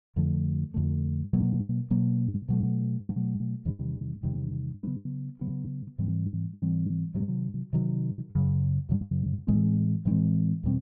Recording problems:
lost packets; 15% of the sound replaced, filled with the last packet

